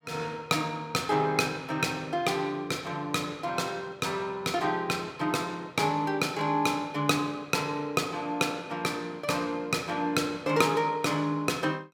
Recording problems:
none

